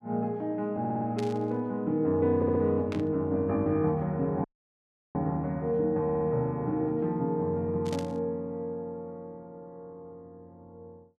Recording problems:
stutter; at 1 s, at 2.5 s and at 6 s
static burst; at 1 s, at 3 s and at 8 s; peak -8 dB vs average level
audio cutting out; at 4.5 s for 0.5 s

